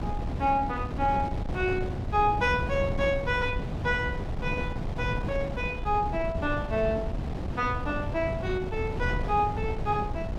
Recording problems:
wind on the microphone; below 240 Hz, SNR 4 dB

